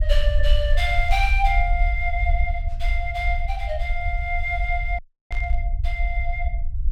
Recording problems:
low-frequency rumble; below 56 Hz, SNR -1 dB
static burst; at 1 s and at 5.5 s; peak -11 dB vs average level
dropout; at 5 s

